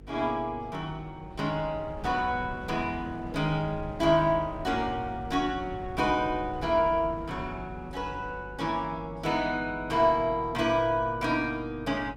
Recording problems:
electrical hum; 50 Hz, harmonics up to 500 Hz, SNR 18 dB
wind noise; below 210 Hz, SNR 17 dB

